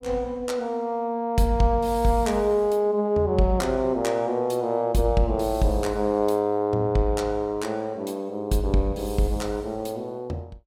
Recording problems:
none

